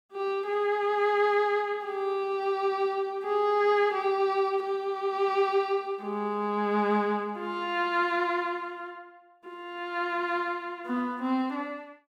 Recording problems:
none

